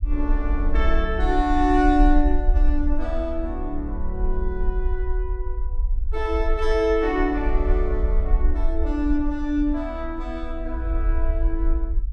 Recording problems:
low-frequency rumble; below 50 Hz, SNR 1 dB

